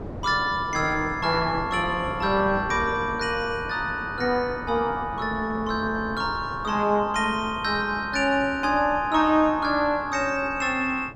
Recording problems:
wind on the microphone; below 520 Hz, SNR 14 dB

